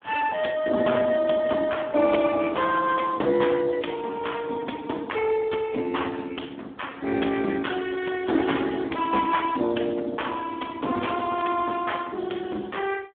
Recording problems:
phone line; 220 Hz to 3.4 kHz, Speex

